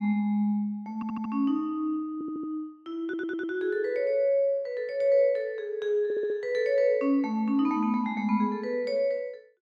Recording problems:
stutter; 4 times, first at 1 s

